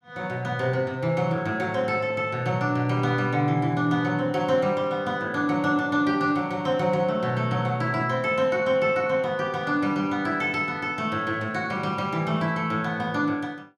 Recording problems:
none

